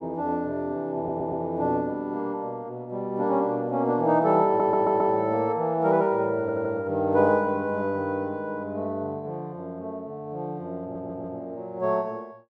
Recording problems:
stutter; 4 times, first at 1 s

